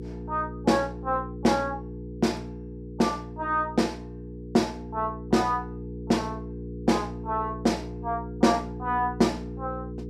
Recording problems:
electrical hum; 60 Hz, harmonics up to 480 Hz, SNR 10 dB

